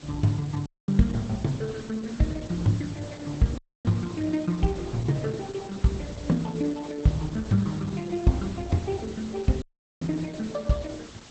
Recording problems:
lossy compression; Opus, log-spectral distance 5 dB, nothing above 8 kHz
background hiss; slope -2 dB per octave, SNR 18 dB
dropout; at 0.5 s, at 3.5 s and at 9.5 s

